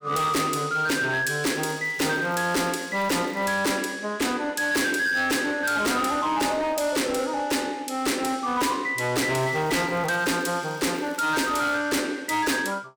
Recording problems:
distortion; hard clipping, signal-to-distortion ratio 6 dB
crackle; from 1.5 to 3.5 s and from 9.5 to 12 s; loose cable, SNR 25 dB

